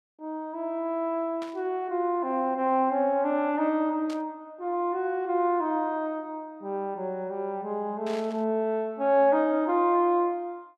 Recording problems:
burst of static; at 1.5 s, at 4 s and at 8 s; peak -12 dB vs average level

